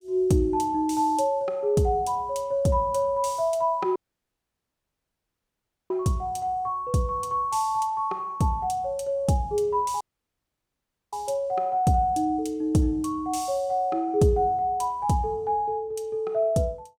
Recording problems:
dropout; at 4 s for 2 s and at 10 s for 1 s

